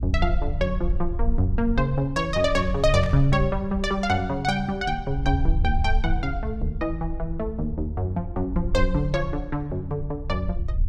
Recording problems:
low-frequency rumble; below 62 Hz, SNR 5 dB
burst of static; at 3 s; peak -10 dB vs average level

